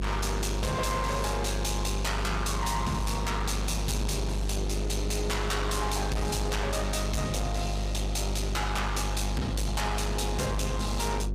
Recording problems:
distortion; hard clipping, signal-to-distortion ratio 8 dB
electrical hum; 50 Hz, harmonics up to 1.1 kHz, SNR 2 dB

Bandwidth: 15 kHz